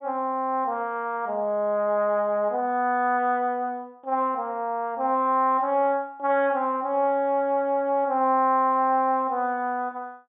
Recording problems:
treble cut off; nothing above 3.6 kHz

